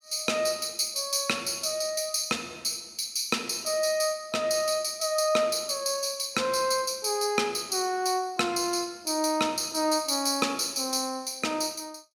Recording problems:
none

